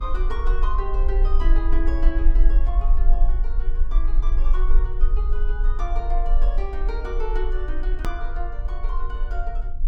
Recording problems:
hum; 50 Hz, harmonics up to 500 Hz, SNR 20 dB
rumble; below 36 Hz, strongest tone 22 Hz, SNR -10 dB
hard cut with a click; at 8 s

